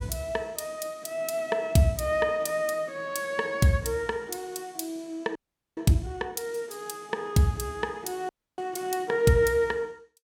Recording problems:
frozen audio; at 5.5 s and at 8.5 s

